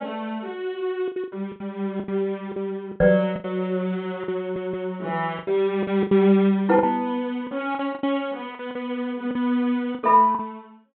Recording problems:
treble cut off; nothing above 4 kHz
lost packets; 12% of the sound replaced, filled with the last packet
microphone bump; at 3 s; peak 0 dB vs average level
stutter; at 4.5 s

